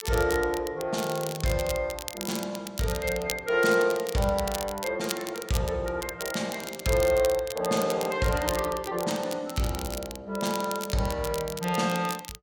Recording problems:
crackle; vinyl, SNR 10 dB

